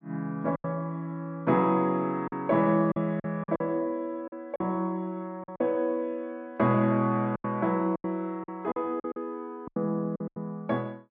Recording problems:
packet loss; 9% of the sound replaced, filled with silence

